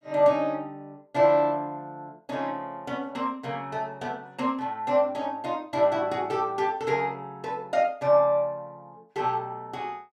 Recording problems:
none

